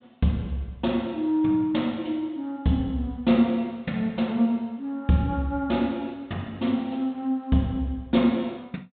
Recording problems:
treble missing; nothing above 4 kHz

